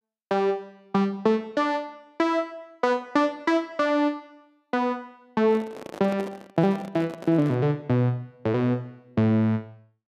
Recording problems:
handling noise; from 5.5 to 7.5 s; peak -8 dB vs average level

